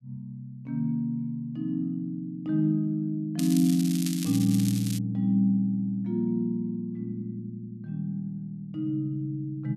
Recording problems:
crackle; from 3.5 to 5 s; loose cable, SNR 10 dB

